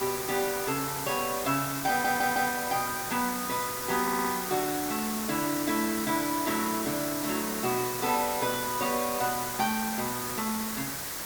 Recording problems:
background hiss; SNR 3 dB
audio stuttering; at 2 s and at 4 s

